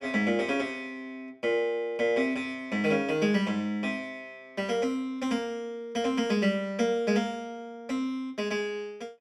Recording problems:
none

